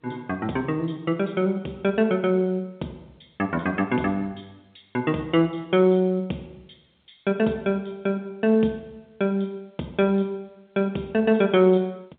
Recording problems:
phone line; 240 Hz to 3.7 kHz, G.711

